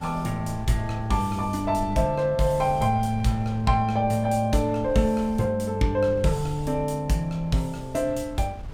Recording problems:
wind on the microphone; below 110 Hz, SNR 16 dB

